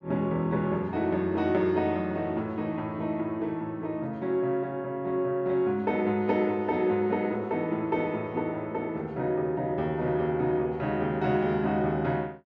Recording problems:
none

